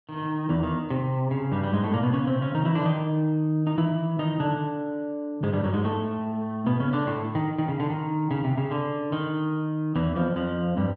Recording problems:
none

